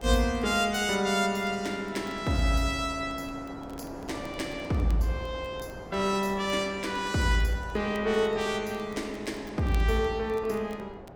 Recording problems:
wind noise; below 740 Hz, SNR 15 dB
crackling; vinyl, SNR 29 dB

